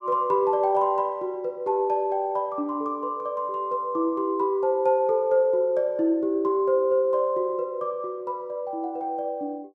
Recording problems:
none

